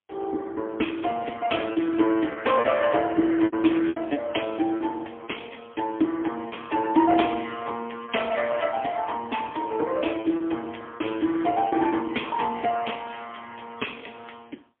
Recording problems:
telephone audio; 260 Hz to 3.4 kHz, AMR-NB, then MP3
lost packets; 5% of the sound replaced, filled with repeated pitch periods

